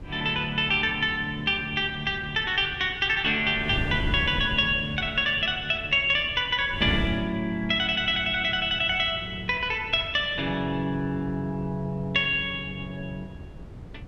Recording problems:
wind noise; below 190 Hz, SNR 14 dB

